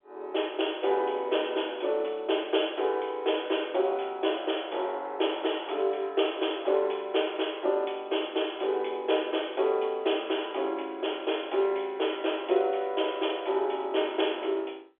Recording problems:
telephone audio; 300 Hz to 3.5 kHz, G.711

